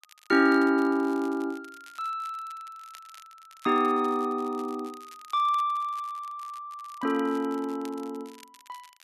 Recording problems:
crackle; vinyl, SNR 26 dB

